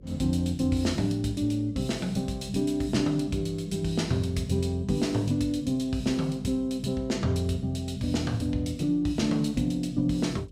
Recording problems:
electrical hum; 50 Hz, harmonics up to 550 Hz, SNR 23 dB

